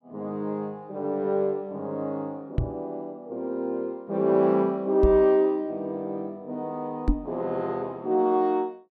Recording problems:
microphone thump; at 2.5 s, at 5 s and at 7 s; peak +6 dB vs average level

